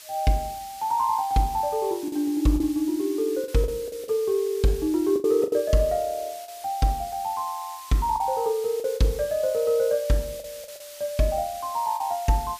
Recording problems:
hiss; slope +4 dB per octave, SNR 17 dB
lost packets; 6% of the sound replaced, filled with the last packet

